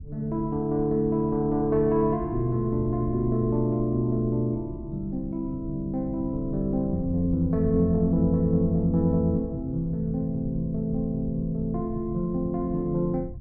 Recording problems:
low-frequency rumble; below 110 Hz, SNR 13 dB

